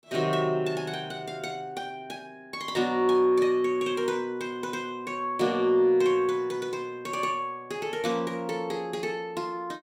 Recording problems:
none

